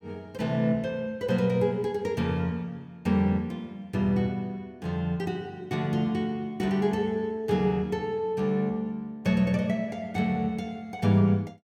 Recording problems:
none

